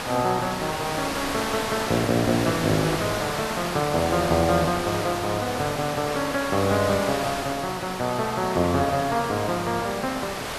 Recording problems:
hiss; slope -3 dB per octave, SNR 5 dB

